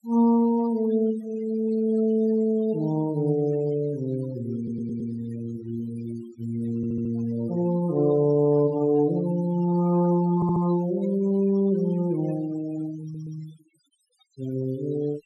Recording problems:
noise reduction artefacts; signal-to-artefact ratio 20 dB
stutter; 4 times, first at 4.5 s

